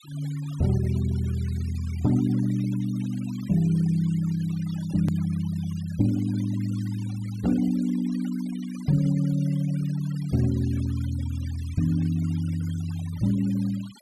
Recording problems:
denoising artefacts; signal-to-artefact ratio 21 dB
edit click; at 5 s

